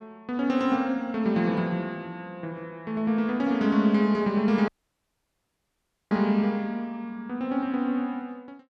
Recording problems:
audio cutting out; at 4.5 s for 1.5 s

